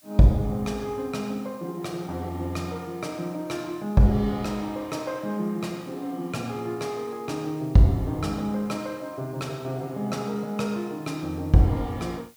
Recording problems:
hiss; slope +1 dB per octave, SNR 27 dB

